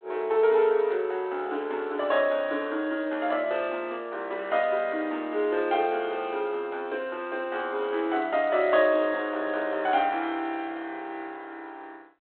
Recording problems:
telephone audio; 260 Hz to 3.8 kHz, G.726

